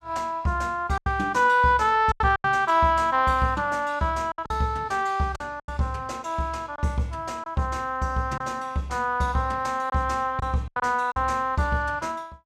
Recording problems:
packet loss; 6% of the sound replaced, filled with silence

